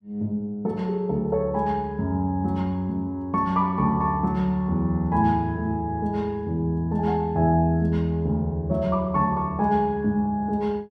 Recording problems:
none

